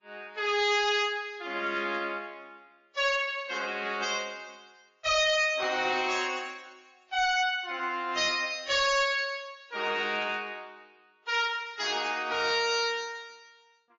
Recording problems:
lossy codec; AAC, then MP3, log-spectral distance 3 dB, nothing above 7.1 kHz
distortion; hard clipping, signal-to-distortion ratio 10 dB

